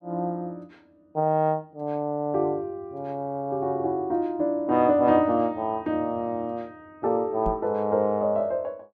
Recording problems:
knock on the microphone; at 7.5 s; peak -3 dB vs average level

